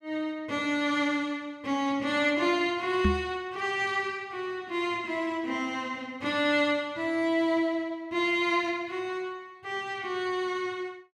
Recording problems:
microphone thump; at 3 s; peak +6 dB vs average level

